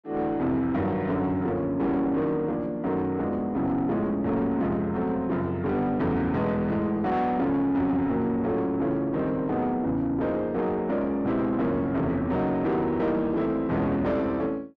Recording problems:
distorted audio; soft clipping, signal-to-distortion ratio 9 dB

